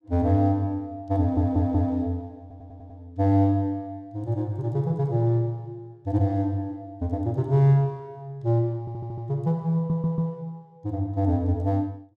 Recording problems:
stutter; 4 times, first at 1 s

